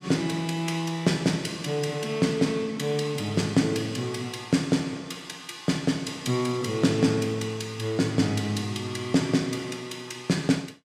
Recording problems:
none

